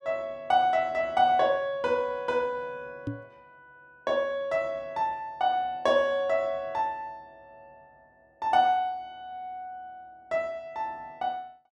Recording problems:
microphone bump; at 3 s; peak -1 dB vs average level

